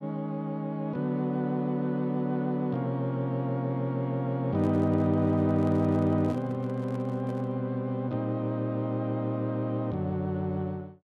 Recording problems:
microphone handling noise; from 4.5 to 7.5 s; peak -10 dB vs average level

